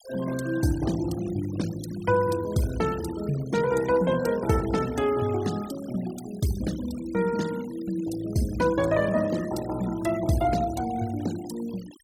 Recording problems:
noise reduction artefacts; signal-to-artefact ratio 17 dB

